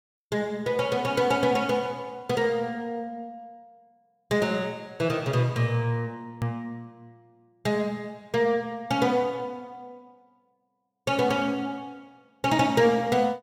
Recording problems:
edit click; at 6.5 s

